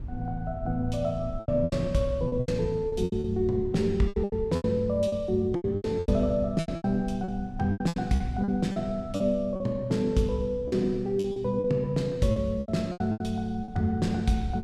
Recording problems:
wind noise; below 100 Hz, SNR 15 dB
lost packets; 14% of the sound replaced, filled with repeated pitch periods

